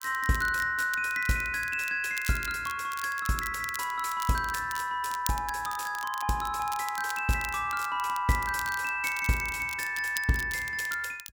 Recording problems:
crackling; vinyl, SNR 13 dB

